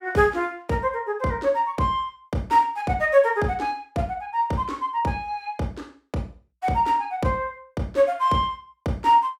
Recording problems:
none

